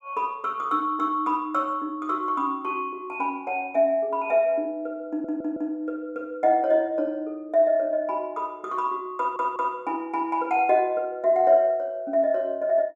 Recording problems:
stutter; at 5 s and at 9 s

